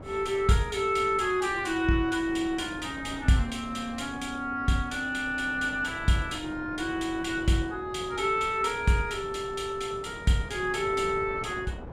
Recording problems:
wind noise; below 540 Hz, SNR 16 dB

